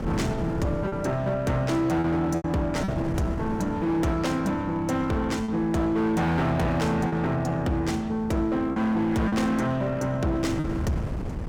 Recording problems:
distorted audio; hard clipping, signal-to-distortion ratio 10 dB
wind on the microphone; below 290 Hz, SNR 11 dB
lost packets; 4% of the sound replaced, filled with repeated pitch periods

